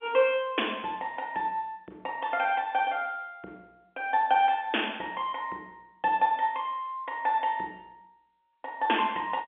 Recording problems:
phone line; 280 Hz to 3.5 kHz, G.711

